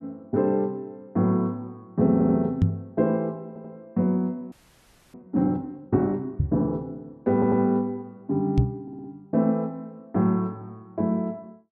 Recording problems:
audio stuttering; 4 times, first at 2 s
microphone bump; at 2.5 s, at 6.5 s and at 8.5 s; peak +8 dB vs average level
audio freezing; at 4.5 s for 0.5 s

